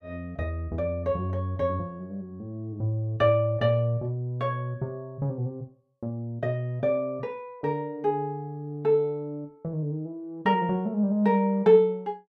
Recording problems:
none

